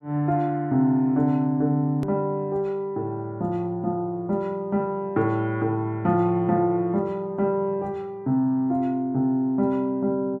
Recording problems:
edit click; at 2 s

